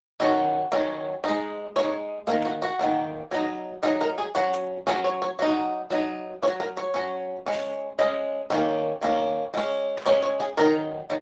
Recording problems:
lossy codec; Speex, then Opus, log-spectral distance 4 dB
burst of static; 4 times, first at 2.5 s; peak -9 dB vs average level

